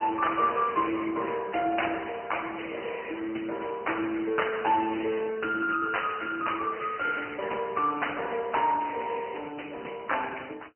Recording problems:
phone line; 260 Hz to 3 kHz, AMR-NB

